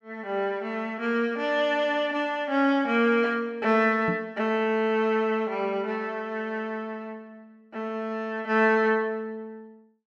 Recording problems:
microphone thump; at 4 s; peak 0 dB vs average level

